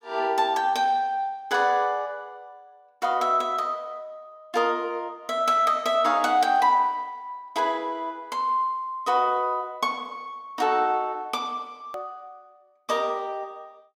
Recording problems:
hard cut with a click; at 12 s

